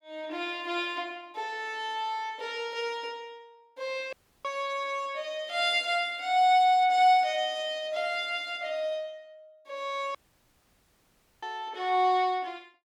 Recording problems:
dropout; at 4 s and at 10 s for 1.5 s

